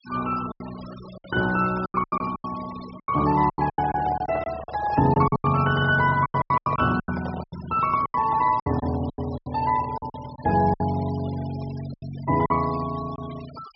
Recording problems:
treble missing; nothing above 5.6 kHz
denoising artefacts; signal-to-artefact ratio 19 dB
packet loss; 14% of the sound replaced, filled with silence
handling noise; from 3.5 to 7.5 s; peak -6 dB vs average level

